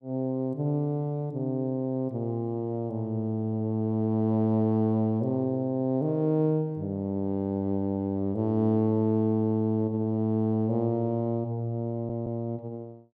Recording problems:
audio stuttering; at 12 s

